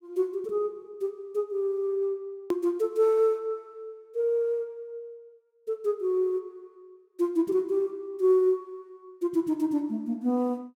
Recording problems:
hard cut with a click; at 2.5 s

